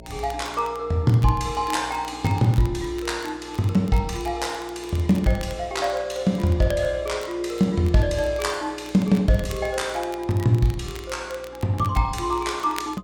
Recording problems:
hum; 60 Hz, harmonics up to 660 Hz, SNR 25 dB
crackling; vinyl, SNR 21 dB

